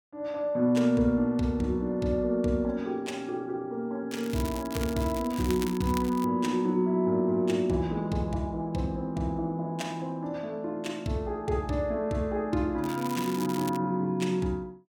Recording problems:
crackling; from 4 to 6.5 s and at 13 s; loose cable, SNR 13 dB

